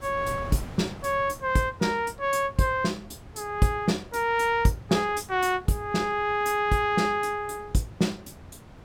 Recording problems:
wind noise; below 520 Hz, SNR 19 dB

